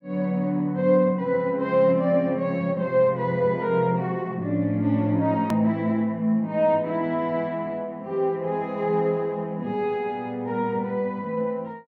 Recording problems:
edit click; at 5.5 s

